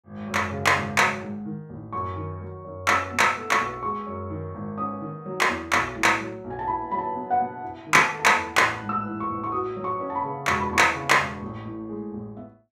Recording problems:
none

